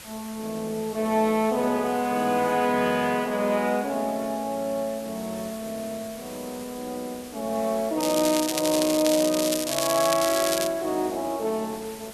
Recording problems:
hiss; slope 0 dB per octave, SNR 16 dB
crackle; from 8 to 11 s; loose cable, SNR 3 dB

